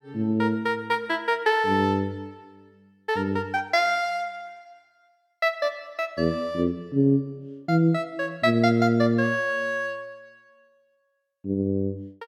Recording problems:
none

